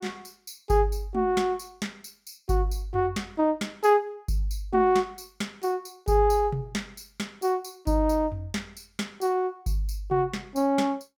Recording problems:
none

